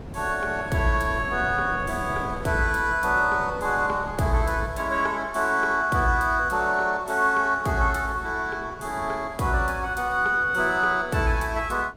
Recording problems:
wind noise; below 420 Hz, SNR 17 dB

